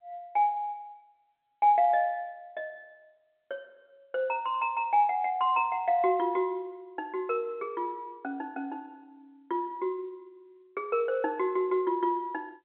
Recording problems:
phone line; 220 Hz to 3.4 kHz, G.711

